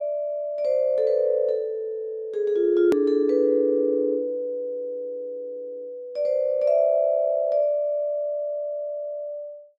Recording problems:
hard cut with a click; at 3 s

